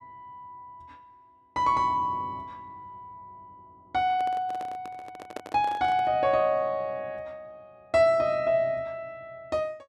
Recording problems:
handling noise; from 4 to 6 s; peak -6 dB vs average level

